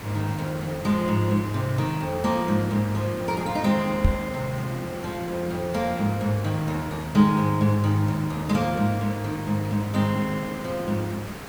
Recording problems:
hiss; slope -5 dB per octave, SNR 12 dB
microphone thump; at 4 s; peak +8 dB vs average level

